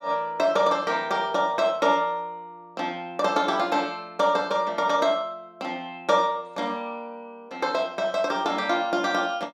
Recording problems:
none

